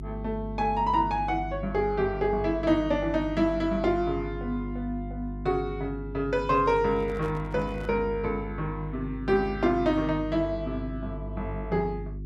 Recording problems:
hum; 50 Hz, harmonics up to 400 Hz, SNR 10 dB
microphone handling noise; from 6.5 to 8 s; peak -11 dB vs average level

